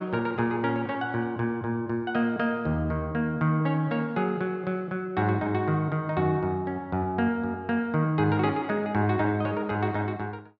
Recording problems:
none

